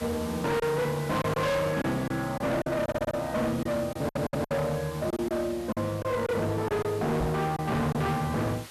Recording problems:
distortion; hard clipping, signal-to-distortion ratio 7 dB
background hiss; SNR 16 dB
lost packets; 6% of the sound replaced, filled with silence
audio stuttering; at 3 s and at 4 s
knock on the microphone; at 7 s; peak +3 dB vs average level

